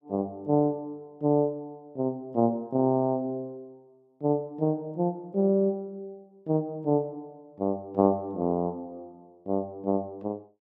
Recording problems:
none

